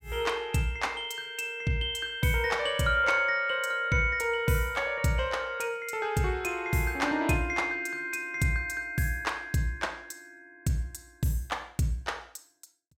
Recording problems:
none

